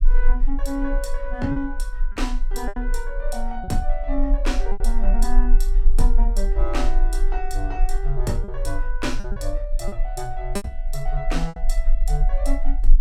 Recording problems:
low-frequency rumble; below 34 Hz, strongest tone 22 Hz, SNR -4 dB
lost packets; 5% of the sound replaced, filled with repeated pitch periods

